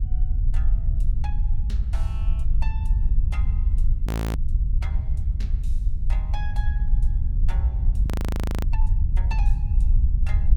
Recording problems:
wind noise; below 62 Hz, SNR -18 dB
audio freezing; at 4 s and at 8 s for 0.5 s

